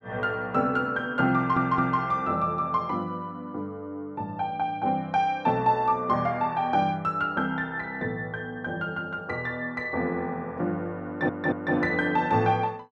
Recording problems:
stutter; at 1.5 s and at 11 s

